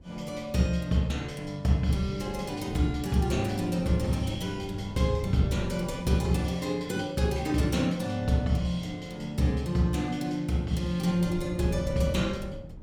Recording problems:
wind on the microphone; below 200 Hz, SNR 13 dB

